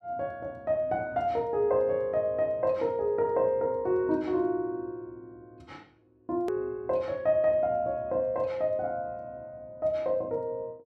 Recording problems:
hard cut with a click; at 6.5 s

